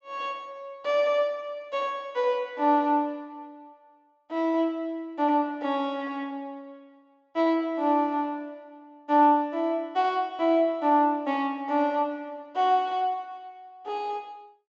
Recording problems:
treble cut off; nothing above 8 kHz

